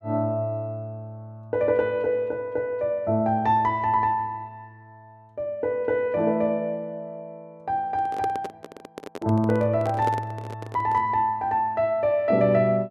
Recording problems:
handling noise; from 8 to 11 s; peak -3 dB vs average level

